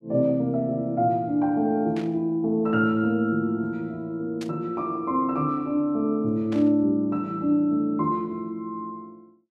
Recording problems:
burst of static; at 2 s, at 4.5 s and at 6.5 s; peak -11 dB vs average level

